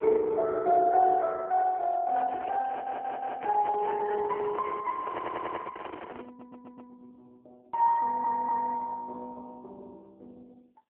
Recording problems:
telephone audio; 280 Hz to 2 kHz, AMR-NB
handling noise; from 2 to 7 s; peak -6 dB vs average level
audio stuttering; 4 times, first at 2.5 s

